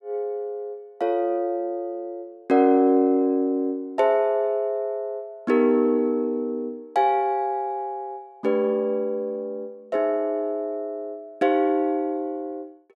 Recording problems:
none

